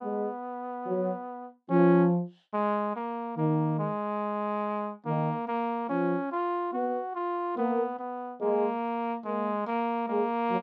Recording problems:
none

